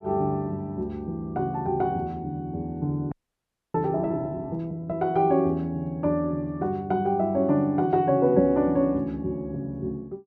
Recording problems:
audio freezing; at 3 s for 0.5 s

